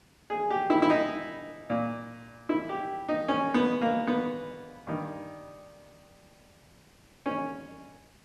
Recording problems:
background hiss; slope -3 dB per octave, SNR 29 dB

